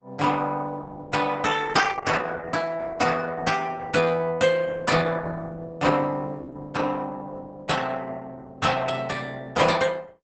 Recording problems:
codec artefacts; Opus, log-spectral distance 5 dB, nothing above 8 kHz

